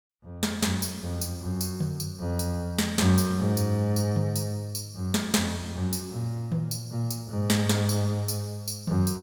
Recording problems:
none

